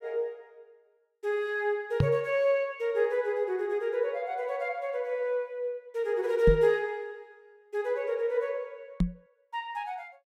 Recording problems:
knock on the microphone; at 2 s, at 6.5 s and at 9 s; peak +8 dB vs average level

